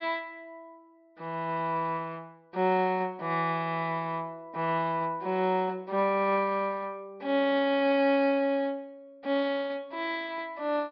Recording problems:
low-pass filter; nothing above 5.5 kHz

